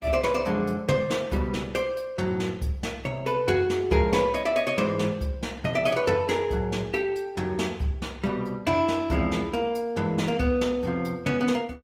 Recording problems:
lossy compression; Opus, log-spectral distance 2 dB

